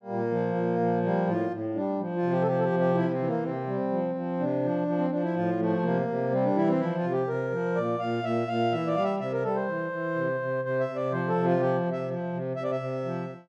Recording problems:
none

